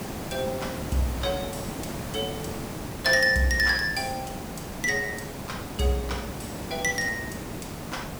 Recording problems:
background hiss; slope -6 dB per octave, SNR 8 dB

